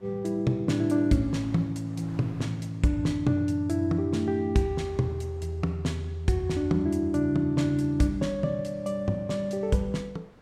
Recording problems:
wind on the microphone; below 950 Hz, SNR 26 dB

